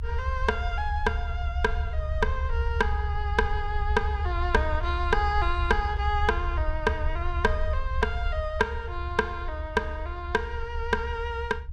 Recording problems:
low-frequency rumble; below 72 Hz, SNR 2 dB

